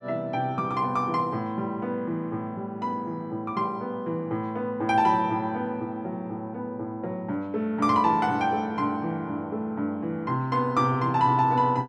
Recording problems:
none

